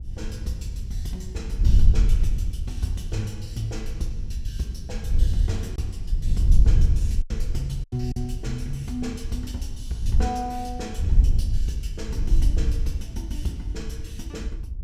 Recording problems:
wind noise; below 68 Hz, SNR -6 dB
packet loss; 1.5% of the sound replaced, filled with silence

